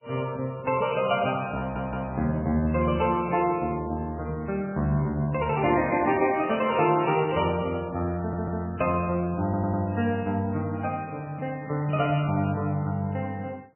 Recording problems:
codec artefacts; MP3, log-spectral distance 3 dB, nothing above 2.7 kHz
audio stuttering; at 1.5 s, at 8 s and at 9.5 s

